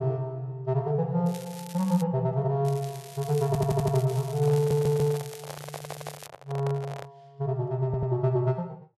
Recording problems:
crackle; at 1.5 s and from 2.5 to 6.5 s; loose cable, SNR 17 dB
audio stuttering; 4 times, first at 3.5 s
microphone handling noise; from 4.5 to 7 s; peak -6 dB vs average level

